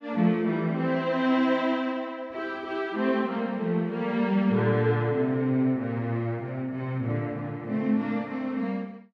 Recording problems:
none

